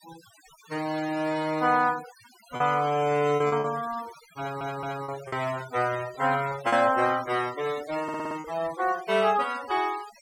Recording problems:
noise reduction artefacts; signal-to-artefact ratio 17 dB
packet loss; 4% of the sound replaced, filled with repeated pitch periods
stutter; at 4.5 s and at 8 s

